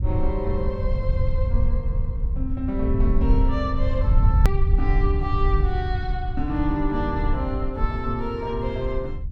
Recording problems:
rumble; below 78 Hz, SNR -3 dB
edit click; at 4.5 s

